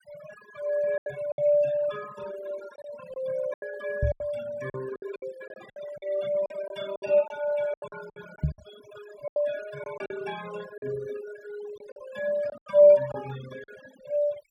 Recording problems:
noise reduction artefacts; signal-to-artefact ratio 15 dB
lost packets; 10% of the sound replaced, filled with silence
microphone bump; at 4 s and at 8.5 s; peak +5 dB vs average level

